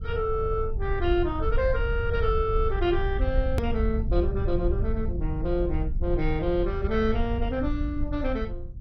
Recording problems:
lossy compression; MP2, log-spectral distance 2 dB, nothing above 4.9 kHz
low-frequency rumble; below 74 Hz, SNR 2 dB
edit click; at 3.5 s

